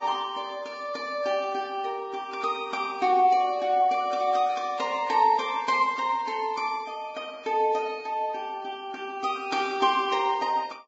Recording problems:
codec artefacts; Vorbis, log-spectral distance 3 dB, nothing above 7.3 kHz

